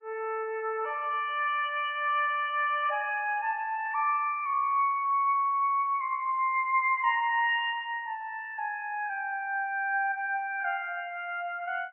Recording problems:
codec artefacts; MP3, log-spectral distance 2 dB, nothing above 2.9 kHz

